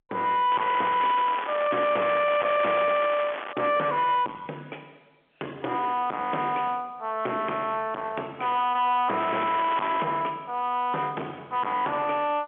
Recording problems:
phone line; 370 Hz to 3.4 kHz, G.711
distorted audio; soft clipping, signal-to-distortion ratio 5 dB
crackling; from 0.5 to 3.5 s and at 9 s; loose cable, SNR 9 dB

